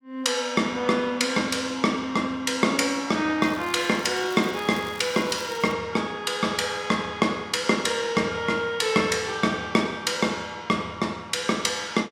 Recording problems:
crackling; from 3.5 to 5.5 s; loose cable, SNR 19 dB

